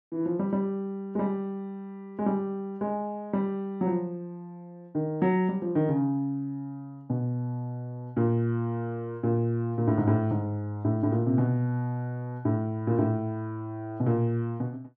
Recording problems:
none

